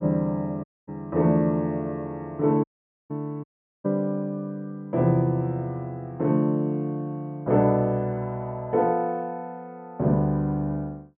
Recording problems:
treble missing; nothing above 3.5 kHz
dropout; at 0.5 s, at 2.5 s and at 3.5 s

